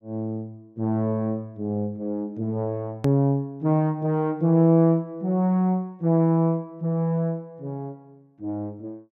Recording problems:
hard cut with a click; at 3 s

